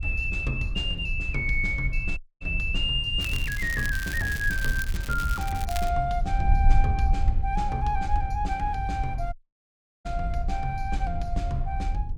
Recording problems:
wind on the microphone; below 64 Hz, SNR 2 dB
dropout; at 2 s and at 9.5 s for 0.5 s
crackle; from 3 to 6 s; loose cable, SNR 10 dB

